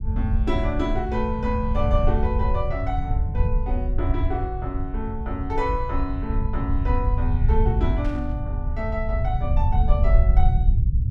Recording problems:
rumble; below 82 Hz, SNR -4 dB
burst of static; at 8 s; peak -10 dB vs average level

